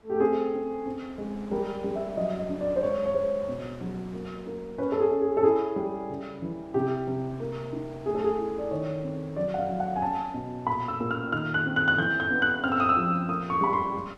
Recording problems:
wind noise; below 1.1 kHz, SNR 22 dB

